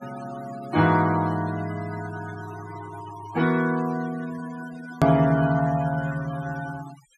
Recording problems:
noise reduction artefacts; signal-to-artefact ratio 18 dB
click at an edit; at 5 s

